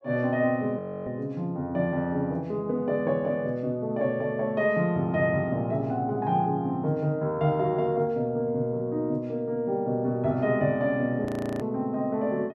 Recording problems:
frozen audio; at 1 s and at 11 s

